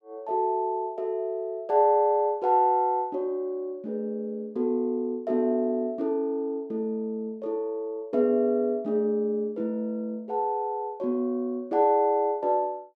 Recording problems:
none

